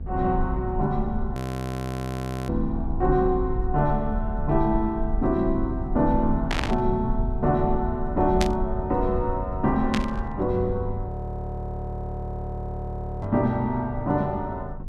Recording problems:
hum; 50 Hz, harmonics up to 500 Hz, SNR 15 dB
low-frequency rumble; below 72 Hz, SNR 7 dB
audio freezing; at 1.5 s for 1 s and at 11 s for 2 s
static burst; 4 times, first at 6.5 s; peak +3 dB vs average level

